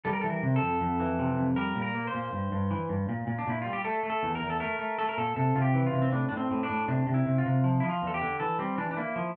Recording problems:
none

